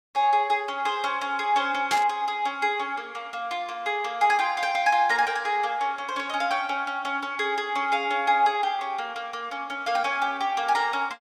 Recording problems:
burst of static; at 2 s; peak +1 dB vs average level

